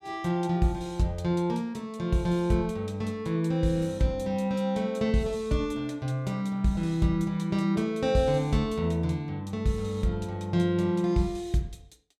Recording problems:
none

